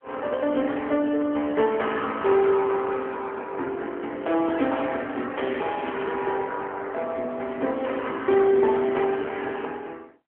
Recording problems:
phone line; 240 Hz to 3.4 kHz, AMR-NB

